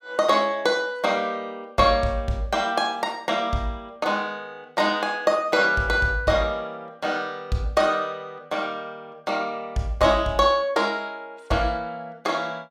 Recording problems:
none

